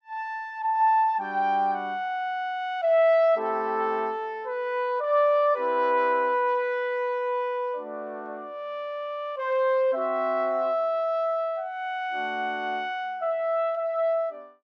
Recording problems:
none

